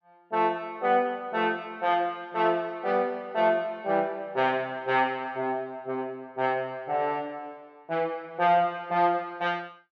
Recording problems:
none

